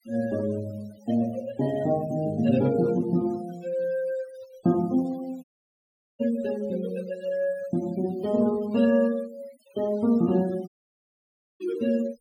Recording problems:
denoising artefacts; signal-to-artefact ratio 22 dB
dropout; at 5.5 s for 1 s and at 11 s for 1 s

